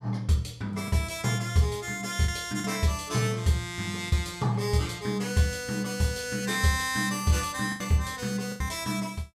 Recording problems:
packet loss; 3% of the sound replaced, filled with the last packet

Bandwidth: 15 kHz